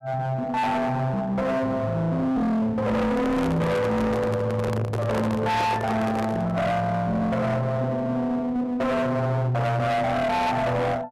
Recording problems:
distorted audio; hard clipping, uneven, signal-to-distortion ratio 5 dB
microphone handling noise; from 3 to 6.5 s; peak +1 dB vs average level

